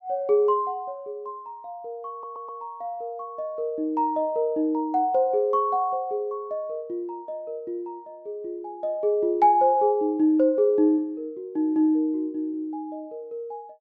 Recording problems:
audio stuttering; at 2 s

